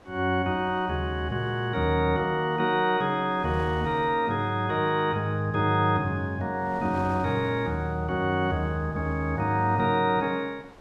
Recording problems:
wind on the microphone; below 1.2 kHz, SNR 23 dB

